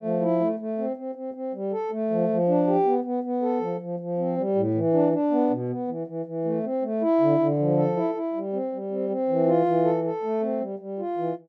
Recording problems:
none

